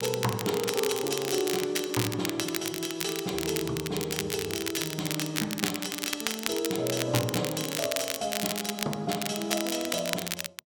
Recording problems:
crackle; vinyl, SNR 2 dB

